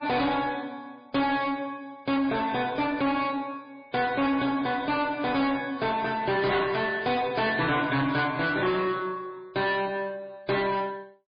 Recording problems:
codec artefacts; MP3, log-spectral distance 3 dB, nothing above 4.8 kHz
distortion; soft clipping, signal-to-distortion ratio 8 dB

